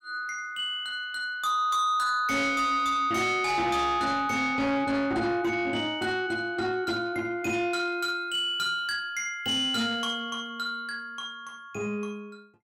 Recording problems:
distorted audio; soft clipping, signal-to-distortion ratio 10 dB

